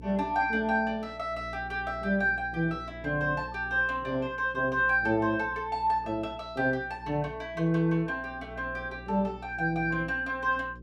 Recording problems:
hum; 60 Hz, harmonics up to 540 Hz, SNR 18 dB

